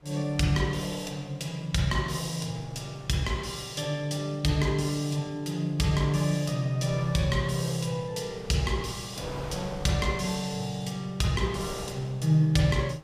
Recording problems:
wind on the microphone; below 930 Hz, SNR 18 dB

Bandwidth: 14.5 kHz